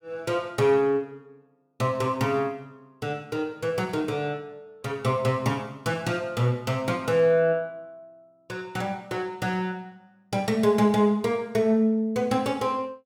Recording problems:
none

